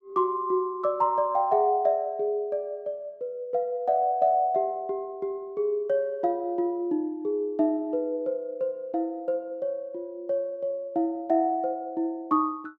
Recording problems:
none

